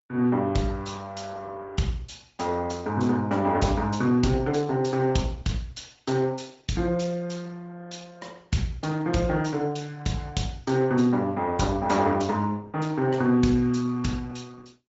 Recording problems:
treble missing; nothing above 7.6 kHz
lossy compression; Opus, log-spectral distance 4 dB

